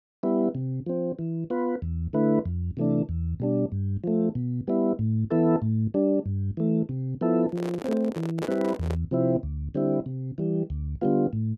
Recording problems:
handling noise; from 7.5 to 9 s; peak -2 dB vs average level

